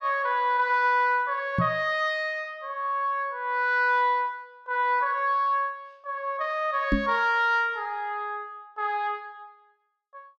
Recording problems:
knock on the microphone; at 1.5 s and at 7 s; peak +5 dB vs average level

